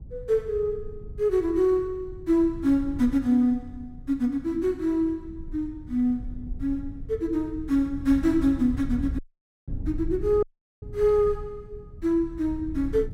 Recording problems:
rumble; below 100 Hz, SNR 14 dB
dropout; at 9 s and at 10 s

